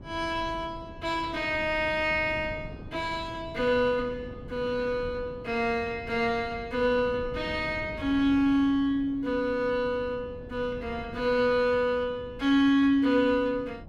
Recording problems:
wind noise; below 270 Hz, SNR 17 dB

